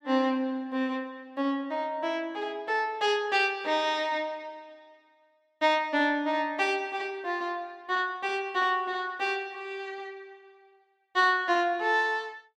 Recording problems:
none

